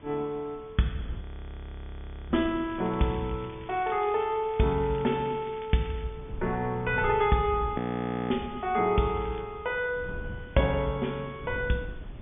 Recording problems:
low-pass filter; nothing above 3.6 kHz
background hiss; SNR 28 dB
wind noise; below 170 Hz, SNR 16 dB
frozen audio; at 1 s for 1 s and at 8 s for 0.5 s
crackling; from 2.5 to 6 s and at 9 s; loose cable, SNR 23 dB

